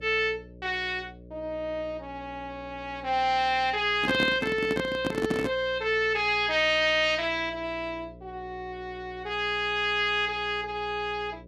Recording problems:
hum; 60 Hz, harmonics up to 600 Hz, SNR 21 dB
handling noise; from 4 to 5.5 s; peak +2 dB vs average level

